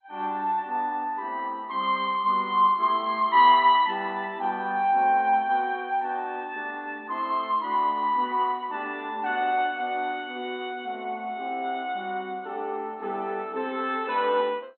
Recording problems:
codec artefacts; MP2, log-spectral distance 2 dB, nothing above 3.9 kHz

